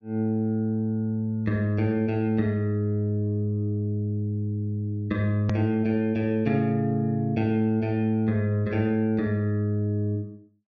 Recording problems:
treble cut off; nothing above 6.6 kHz
edit click; at 5.5 s

